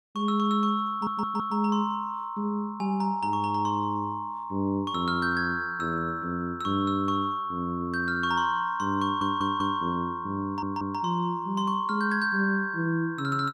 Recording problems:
stutter; at 1 s, at 9 s and at 10 s

